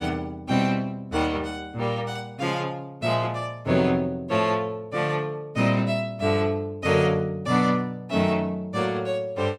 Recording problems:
none

